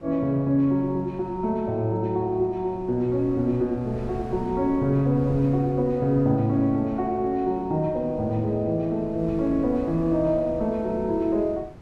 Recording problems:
wind noise; below 240 Hz, SNR 18 dB

